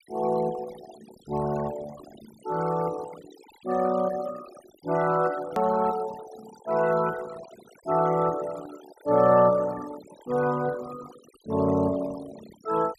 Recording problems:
denoising artefacts; signal-to-artefact ratio 17 dB
hard cut with a click; at 5.5 s

